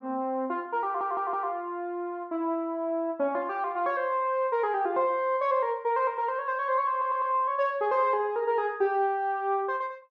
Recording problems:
stutter; at 1 s and at 7 s

